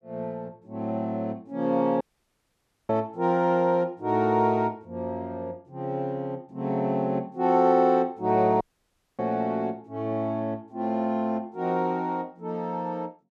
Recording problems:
audio cutting out; at 2 s for 1 s and at 8.5 s for 0.5 s

